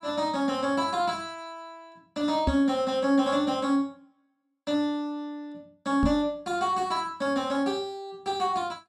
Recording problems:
knock on the microphone; at 2.5 s and at 6 s; peak +4 dB vs average level

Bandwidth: 13 kHz